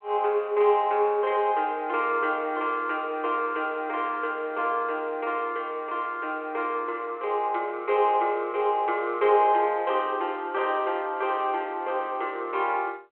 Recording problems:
telephone audio; 320 Hz to 3.3 kHz, G.726

